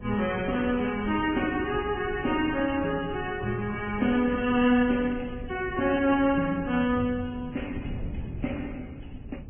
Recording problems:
treble cut off; nothing above 3.1 kHz
lossy codec; Vorbis, then MP3, log-spectral distance 5 dB
wind noise; below 170 Hz, SNR 14 dB

